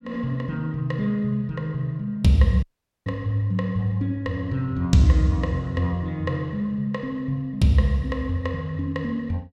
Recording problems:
audio cutting out; at 2.5 s

